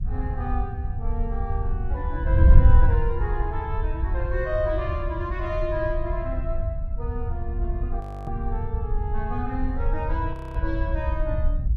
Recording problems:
wind on the microphone; below 74 Hz, SNR -5 dB
audio freezing; at 8 s and at 10 s

